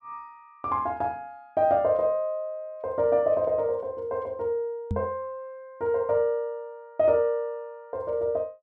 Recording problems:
knock on the microphone; at 5 s; peak +1 dB vs average level

